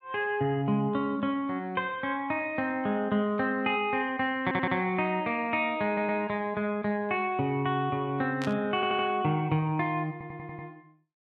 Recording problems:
stutter; 4 times, first at 4.5 s
burst of static; at 8.5 s; peak -6 dB vs average level

